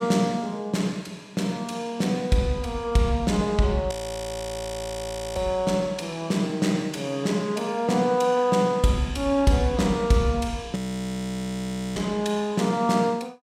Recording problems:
audio freezing; at 4 s for 1.5 s and at 11 s for 1 s

